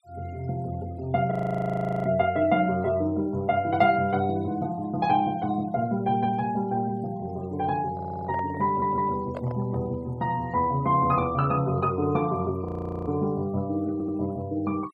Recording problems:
noise reduction artefacts; signal-to-artefact ratio 26 dB
audio freezing; at 1.5 s for 0.5 s and at 13 s
microphone handling noise; from 8 to 10 s; peak -5 dB vs average level
stutter; at 8 s, at 8.5 s and at 14 s

